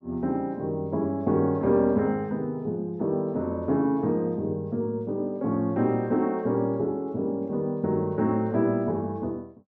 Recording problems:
none

